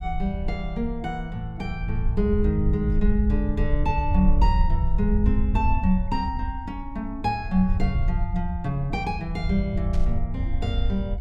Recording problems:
rumble; below 72 Hz, SNR 0 dB
static burst; at 10 s; peak -13 dB vs average level

